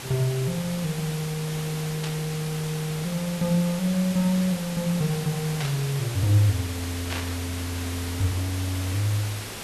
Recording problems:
hiss; slope -2 dB per octave, SNR 8 dB
static burst; at 2 s, at 5.5 s and at 7 s; peak -2 dB vs average level

